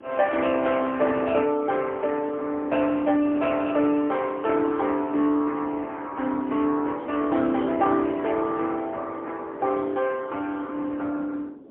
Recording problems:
phone line; 220 Hz to 3.4 kHz, AMR-NB, then MP3
wind noise; below 440 Hz, SNR 19 dB

